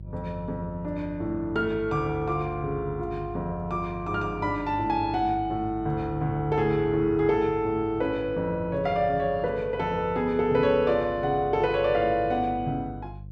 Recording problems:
electrical hum; 50 Hz, harmonics up to 350 Hz, SNR 15 dB

